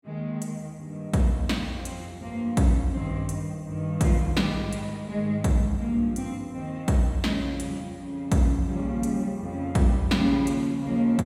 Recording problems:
none

